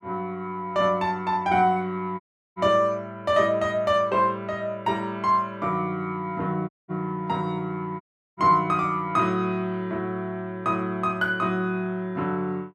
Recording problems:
dropout; at 2 s, at 6.5 s and at 8 s

